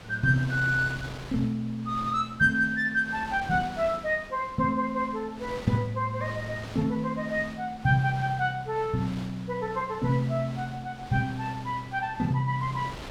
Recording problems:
wind on the microphone; below 2.4 kHz, SNR 16 dB

